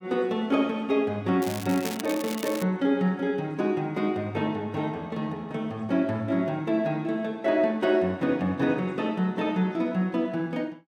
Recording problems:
crackle; from 1.5 to 2.5 s; loose cable, SNR 12 dB

